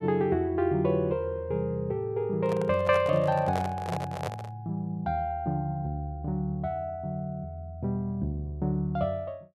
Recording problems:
handling noise; from 2.5 to 4.5 s; peak -1 dB vs average level

